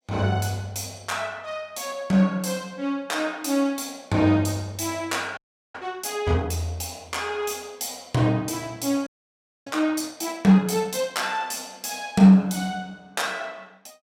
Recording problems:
frozen audio; at 5.5 s and at 9 s for 0.5 s

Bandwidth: 16 kHz